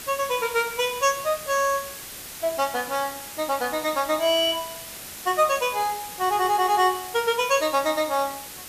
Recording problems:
background hiss; slope 0 dB per octave, SNR 12 dB

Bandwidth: 14.5 kHz